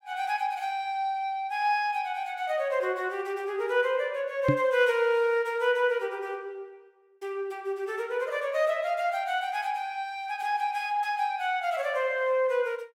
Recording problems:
microphone thump; at 4.5 s; peak +6 dB vs average level

